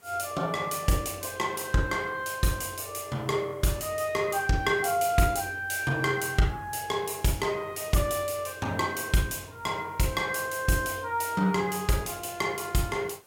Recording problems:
background hiss; slope -4 dB per octave, SNR 29 dB

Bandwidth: 16.5 kHz